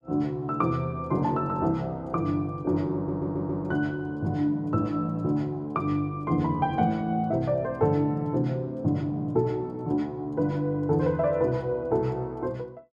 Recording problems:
audio stuttering; at 3 s

